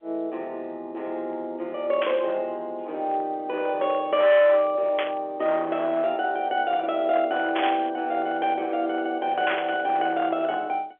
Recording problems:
telephone audio; 280 Hz to 3.5 kHz, G.711
distortion; hard clipping, signal-to-distortion ratio 13 dB
static burst; 4 times, first at 2 s; peak +1 dB vs average level

